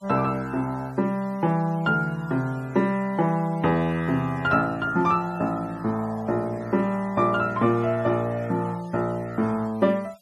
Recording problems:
noise reduction artefacts; signal-to-artefact ratio 27 dB

